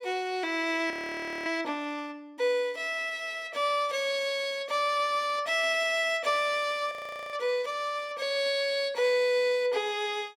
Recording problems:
frozen audio; at 1 s for 0.5 s and at 7 s

